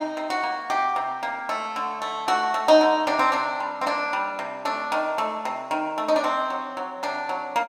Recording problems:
none

